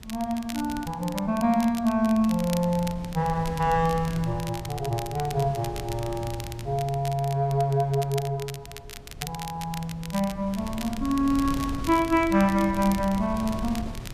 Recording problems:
wind on the microphone; below 170 Hz, SNR 14 dB
crackle; vinyl, SNR 15 dB

